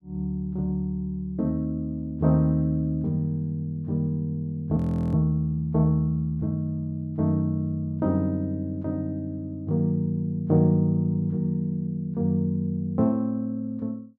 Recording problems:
audio freezing; at 5 s

